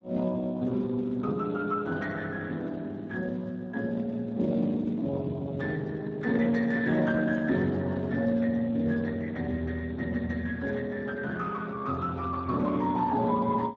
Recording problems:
codec artefacts; Speex, log-spectral distance 3 dB

